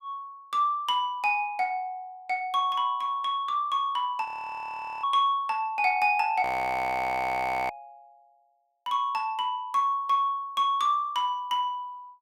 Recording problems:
audio freezing; at 4.5 s for 1 s and at 6.5 s for 1.5 s

